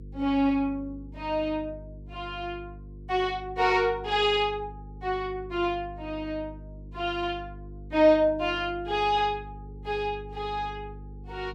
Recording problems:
electrical hum; 50 Hz, harmonics up to 500 Hz, SNR 16 dB

